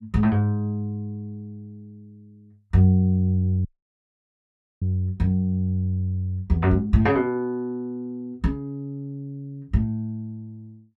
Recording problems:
audio cutting out; at 3.5 s for 1 s

